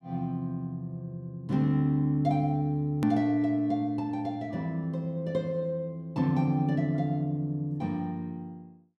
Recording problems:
click at an edit; at 3 s

